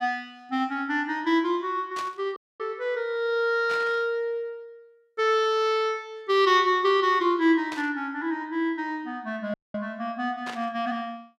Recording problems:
burst of static; 4 times, first at 2 s; peak -7 dB vs average level
audio cutting out; at 2.5 s and at 9.5 s

